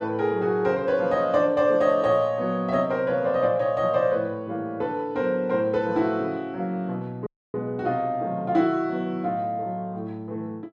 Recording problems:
dropout; at 7.5 s

